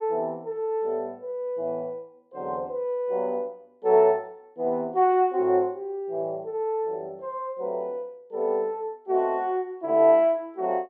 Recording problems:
none

